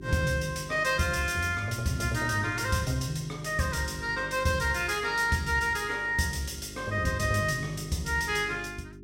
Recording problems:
hum; 50 Hz, harmonics up to 400 Hz, SNR 17 dB

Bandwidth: 16.5 kHz